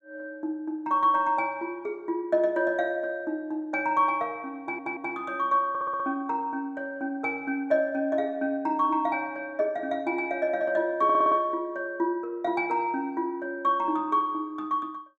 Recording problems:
audio stuttering; at 4.5 s, at 5.5 s and at 11 s

